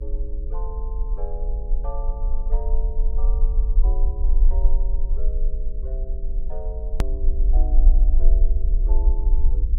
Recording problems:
hum; 60 Hz, harmonics up to 540 Hz, SNR 5 dB
low-frequency rumble; below 40 Hz, strongest tone 20 Hz, SNR -16 dB
edit click; at 7 s

